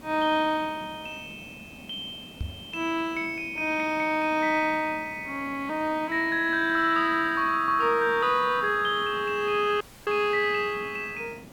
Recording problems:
background hiss; SNR 20 dB
microphone thump; at 2.5 s; peak -3 dB vs average level
audio cutting out; at 10 s

